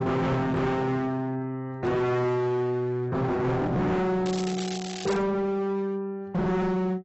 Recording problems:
lossy codec; AAC, log-spectral distance 3 dB, nothing above 7.6 kHz
distortion; hard clipping, signal-to-distortion ratio 6 dB
crackle; at 4.5 s; loose cable, SNR 12 dB

